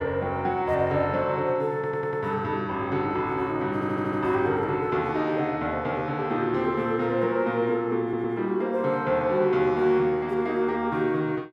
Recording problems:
audio stuttering; at 1.5 s, at 3.5 s and at 8 s

